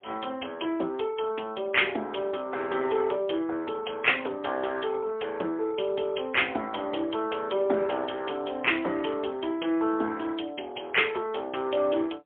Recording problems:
phone line; 280 Hz to 3.4 kHz, AMR-NB, then MP3

